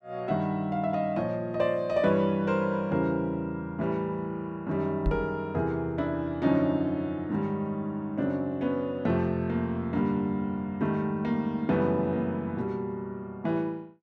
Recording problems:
microphone thump; at 5 s; peak +3 dB vs average level

